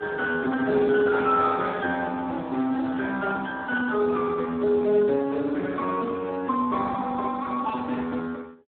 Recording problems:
phone line; 190 Hz to 2.2 kHz, Speex

